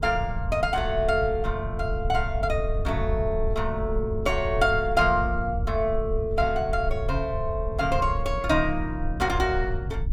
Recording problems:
low-frequency rumble; below 84 Hz, SNR 6 dB

